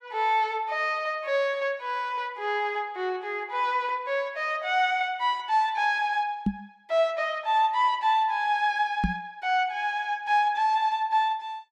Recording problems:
microphone thump; at 6.5 s and at 9 s; peak +4 dB vs average level

